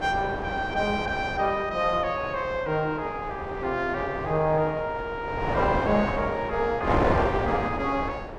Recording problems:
wind on the microphone; below 880 Hz, SNR 4 dB

